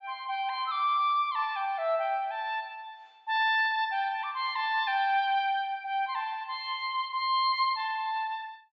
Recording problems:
treble cut off; nothing above 7.5 kHz

